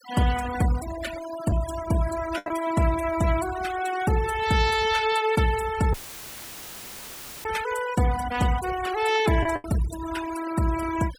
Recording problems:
noise reduction artefacts; signal-to-artefact ratio 12 dB
packet loss; 3% of the sound replaced, filled with the last packet
dropout; at 6 s for 1.5 s; filled with static

